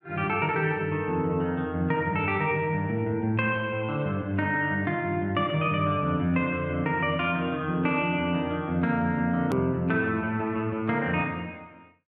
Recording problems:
edit click; at 9.5 s

